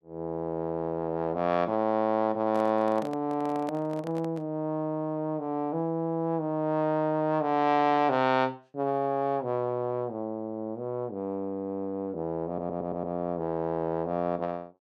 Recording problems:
microphone handling noise; from 2.5 to 4.5 s; peak -6 dB vs average level
audio stuttering; at 12 s

